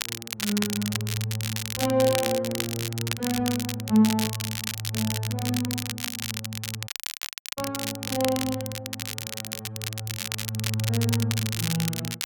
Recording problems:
crackle; vinyl, SNR 3 dB
audio cutting out; at 7 s for 0.5 s

